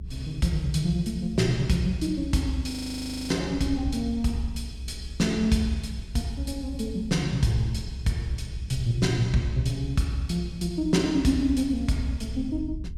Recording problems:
electrical hum; 60 Hz, harmonics up to 420 Hz, SNR 24 dB
low-frequency rumble; below 78 Hz, strongest tone 66 Hz, SNR 12 dB
audio freezing; at 2.5 s for 0.5 s

